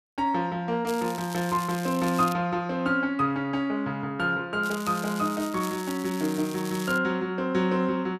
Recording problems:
crackle; from 1 to 2.5 s and from 4.5 to 7 s; loose cable, SNR 14 dB

